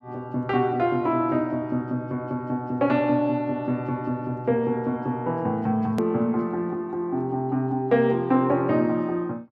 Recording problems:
edit click; at 6 s

